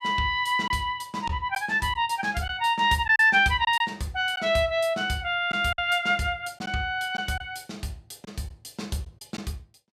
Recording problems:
lost packets; 4% of the sound replaced, filled with silence

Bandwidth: 14.5 kHz